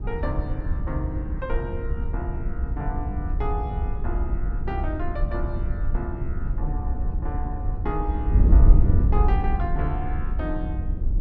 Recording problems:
wind noise; below 74 Hz, SNR -8 dB

